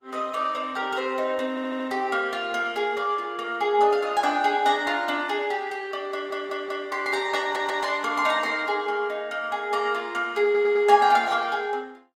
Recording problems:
codec artefacts; Opus, log-spectral distance 3 dB, nothing above 18.5 kHz
audio stuttering; 4 times, first at 1.5 s

